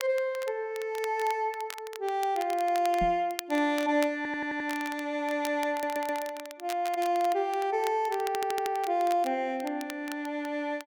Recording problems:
crackle; vinyl, SNR 15 dB
knock on the microphone; at 3 s; peak -2 dB vs average level
stutter; at 4 s, at 5.5 s and at 8.5 s

